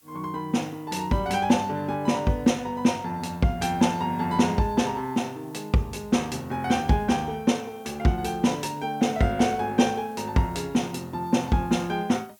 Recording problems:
hiss; slope +1 dB per octave, SNR 30 dB

